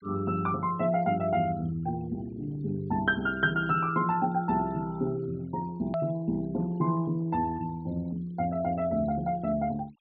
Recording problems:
treble missing; nothing above 4.6 kHz
denoising artefacts; signal-to-artefact ratio 25 dB
hard cut with a click; at 6 s

